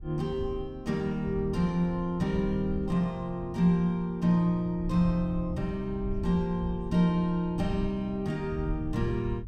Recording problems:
wind on the microphone; below 88 Hz, SNR 12 dB

